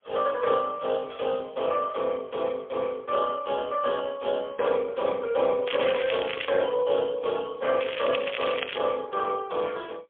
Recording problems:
telephone audio; 280 Hz to 3.4 kHz, AMR-NB, then MP3
crackling; at 5.5 s and at 8 s; loose cable, SNR 7 dB

